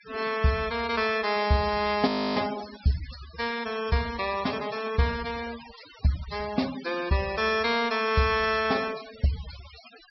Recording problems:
treble cut off; nothing above 5.7 kHz
denoising artefacts; signal-to-artefact ratio 15 dB
frozen audio; at 2 s

